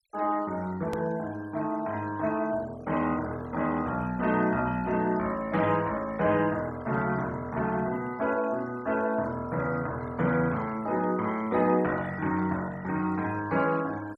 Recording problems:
denoising artefacts; signal-to-artefact ratio 20 dB
edit click; at 1 s

